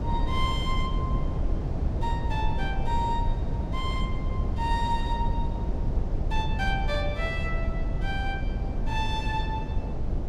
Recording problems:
low-frequency rumble; below 110 Hz, SNR -2 dB

